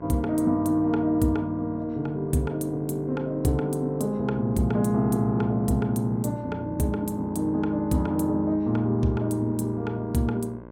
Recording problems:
hum; 60 Hz, harmonics up to 1.7 kHz, SNR 18 dB

